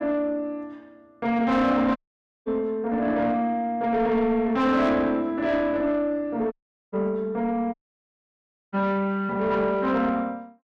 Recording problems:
distorted audio; soft clipping, signal-to-distortion ratio 11 dB
dropout; at 2 s for 0.5 s, at 6.5 s and at 7.5 s for 1 s

